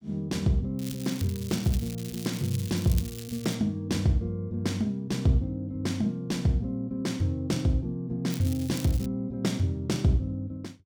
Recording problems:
crackle; from 1 to 3.5 s and at 8.5 s; loose cable, SNR 14 dB

